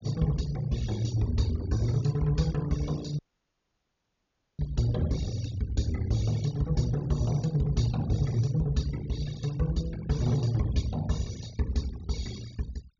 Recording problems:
treble cut off; nothing above 6.9 kHz
denoising artefacts; signal-to-artefact ratio 19 dB
dropout; at 3 s for 1.5 s

